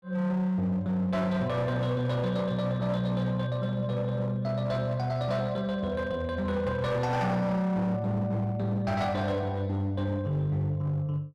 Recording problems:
distorted audio; hard clipping, signal-to-distortion ratio 12 dB

